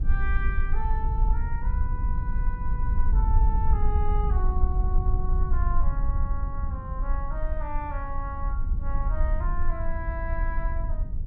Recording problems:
low-frequency rumble; below 58 Hz, SNR -9 dB

